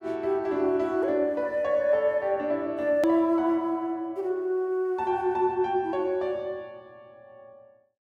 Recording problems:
edit click; at 3 s

